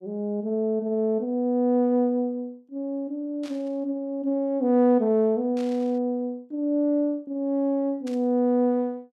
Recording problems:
burst of static; at 3.5 s, at 5.5 s and at 8 s; peak -15 dB vs average level

